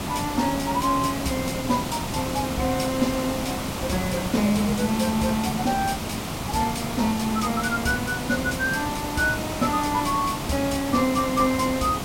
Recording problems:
background hiss; SNR 4 dB

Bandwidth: 16 kHz